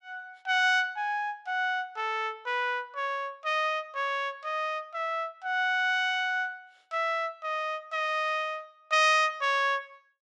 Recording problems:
none

